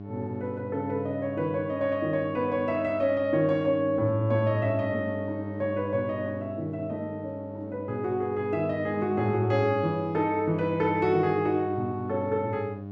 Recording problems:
electrical hum; 50 Hz, harmonics up to 800 Hz, SNR 11 dB

